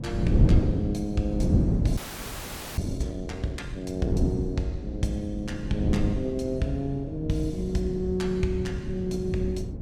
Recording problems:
wind on the microphone; below 200 Hz, SNR -1 dB
frozen audio; at 2 s for 1 s

